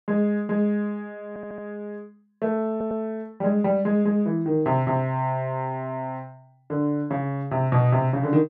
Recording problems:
audio stuttering; at 1.5 s and at 2.5 s

